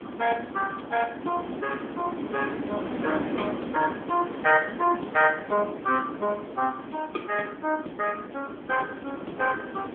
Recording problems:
phone line; 220 Hz to 3.3 kHz, AMR-NB
wind noise; below 590 Hz, SNR 8 dB

